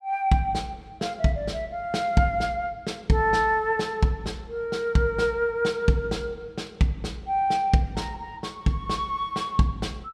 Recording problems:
none

